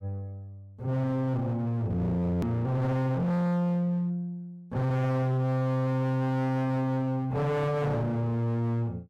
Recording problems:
distorted audio; hard clipping, signal-to-distortion ratio 7 dB
click at an edit; at 2.5 s

